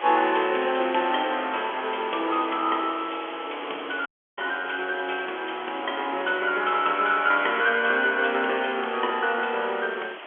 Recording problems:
phone line; 300 Hz to 3.4 kHz, G.711
hiss; SNR 13 dB
dropout; at 4 s

